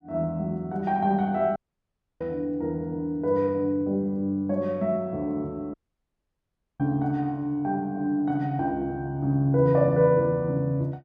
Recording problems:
audio cutting out; at 1.5 s for 0.5 s and at 5.5 s for 1 s

